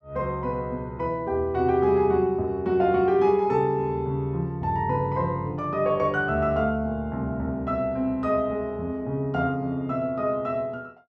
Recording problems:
none

